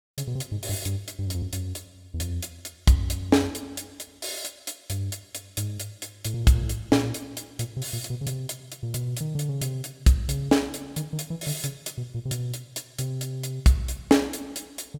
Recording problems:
none

